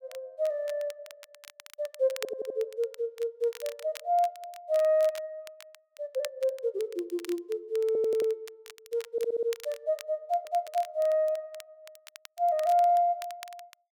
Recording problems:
crackling; vinyl, SNR 20 dB
stutter; 4 times, first at 2 s

